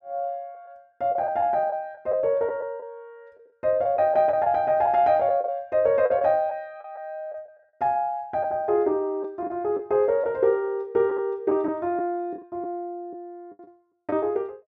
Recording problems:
lost packets; 6% of the sound replaced, filled with the last packet

